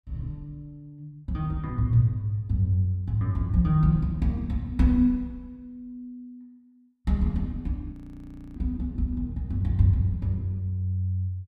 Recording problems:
audio freezing; at 8 s for 0.5 s

